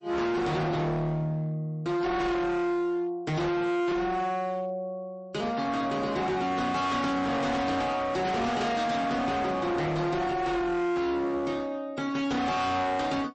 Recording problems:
lossy codec; MP3, log-spectral distance 2 dB, nothing above 8.2 kHz
distorted audio; hard clipping, signal-to-distortion ratio 7 dB

